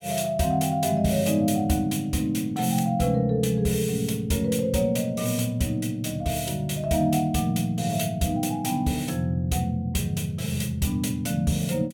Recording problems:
none

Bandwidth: 17.5 kHz